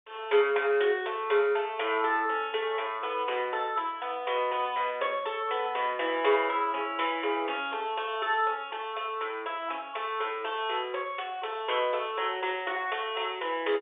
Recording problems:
telephone audio; 340 Hz to 3.6 kHz, G.711

